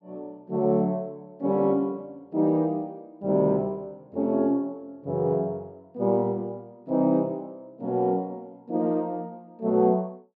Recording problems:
none

